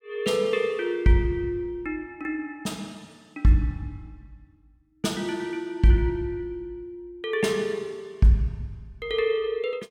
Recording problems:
none

